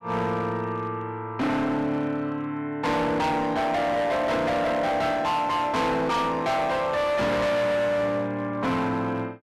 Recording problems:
distortion; hard clipping, signal-to-distortion ratio 7 dB

